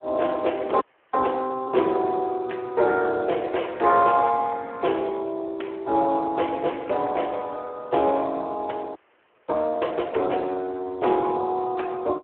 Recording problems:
telephone audio; 300 Hz to 3.2 kHz, Speex
frozen audio; at 1 s and at 9 s for 0.5 s

